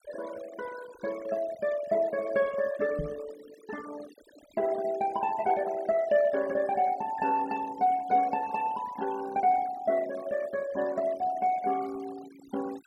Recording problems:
denoising artefacts; signal-to-artefact ratio 18 dB
knock on the microphone; at 3 s; peak -2 dB vs average level

